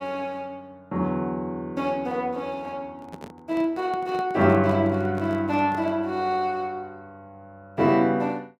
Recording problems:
handling noise; from 3 to 6 s; peak -10 dB vs average level

